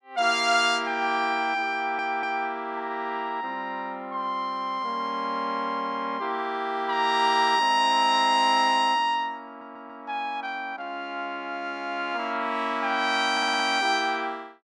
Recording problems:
stutter; at 2 s, at 9.5 s and at 13 s

